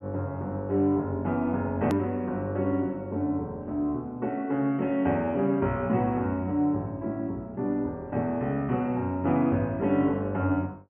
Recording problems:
treble cut off; nothing above 3.2 kHz
hard cut with a click; at 2 s

